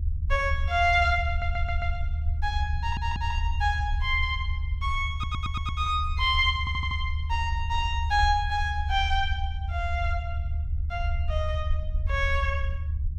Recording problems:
low-frequency rumble; below 76 Hz, SNR 2 dB
audio stuttering; 4 times, first at 1.5 s

